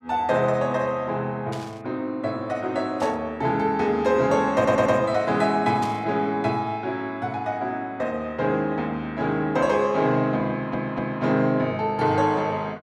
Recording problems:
static burst; at 1.5 s, at 3 s and at 6 s; peak -10 dB vs average level
audio stuttering; at 4.5 s and at 11 s

